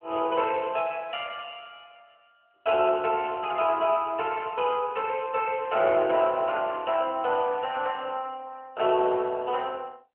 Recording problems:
phone line; 300 Hz to 3.2 kHz, AMR-NB

